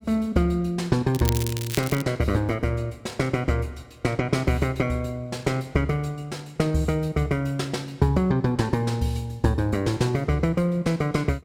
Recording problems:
crackling; at 1 s; loose cable, SNR 9 dB

